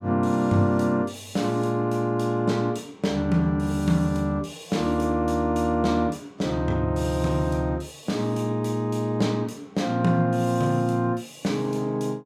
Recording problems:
none

